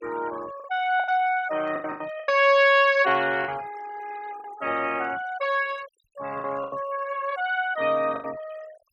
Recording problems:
noise reduction artefacts; signal-to-artefact ratio 21 dB
lost packets; 8% of the sound replaced, filled with the last packet

